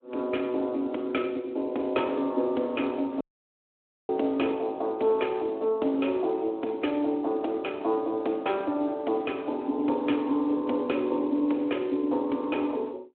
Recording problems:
phone line; 240 Hz to 3.4 kHz, Speex
dropout; at 3 s for 1 s

